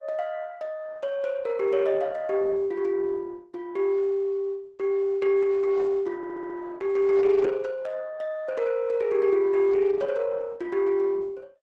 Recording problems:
lossy compression; Opus, log-spectral distance 2 dB
audio stuttering; at 6 s

